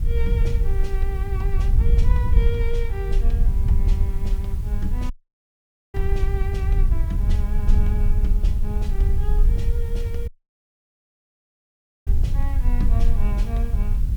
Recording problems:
background hiss; slope -2 dB per octave, SNR 17 dB
rumble; below 38 Hz, strongest tone 24 Hz, SNR -3 dB
wind on the microphone; below 70 Hz, SNR -10 dB
audio cutting out; at 5 s for 1 s and at 10 s for 2 s

